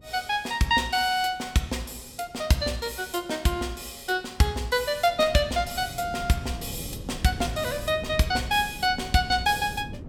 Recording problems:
wind on the microphone; below 220 Hz, SNR 14 dB

